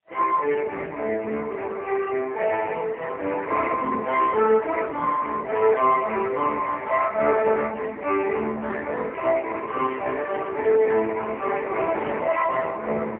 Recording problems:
phone line; 340 Hz to 3.1 kHz, AMR-NB, then MP3

